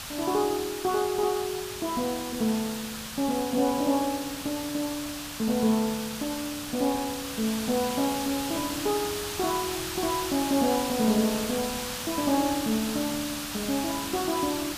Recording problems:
background hiss; SNR 5 dB

